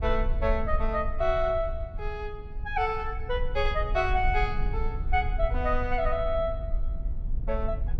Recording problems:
low-frequency rumble; below 54 Hz, SNR 4 dB

